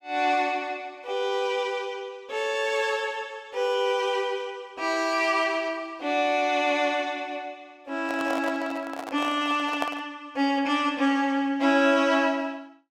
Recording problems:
handling noise; from 8 to 10 s; peak 0 dB vs average level

